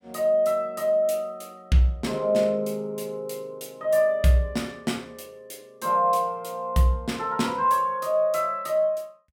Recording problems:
none

